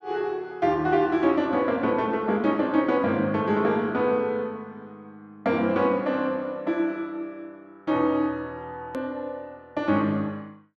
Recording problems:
hard cut with a click; at 9 s

